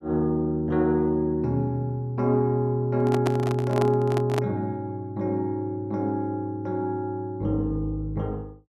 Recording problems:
handling noise; from 3 to 4.5 s; peak +1 dB vs average level

